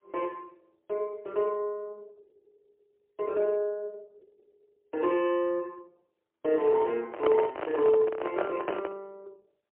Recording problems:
phone line; 260 Hz to 3 kHz, AMR-NB, then MP3
handling noise; from 7 to 9 s; peak +3 dB vs average level

